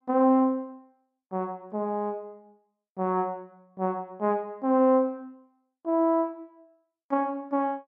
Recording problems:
none

